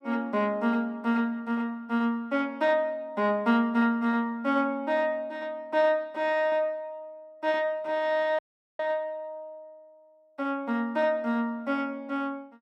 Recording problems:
dropout; at 8.5 s

